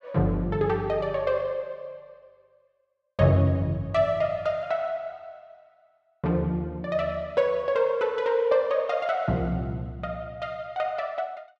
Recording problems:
none

